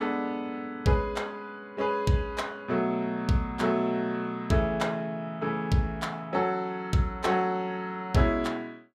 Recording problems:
none

